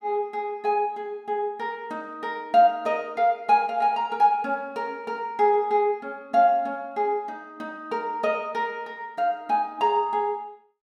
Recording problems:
none

